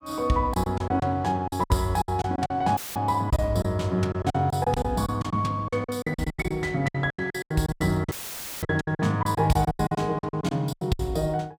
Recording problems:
packet loss; 18% of the sound replaced, filled with silence
dropout; at 3 s and at 8 s for 0.5 s; filled with static

